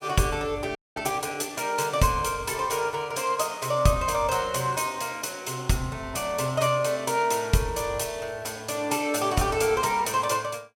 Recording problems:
audio freezing; at 1 s

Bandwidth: 16.5 kHz